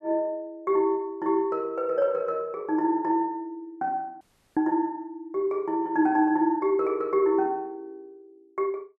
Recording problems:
dropout; at 4 s

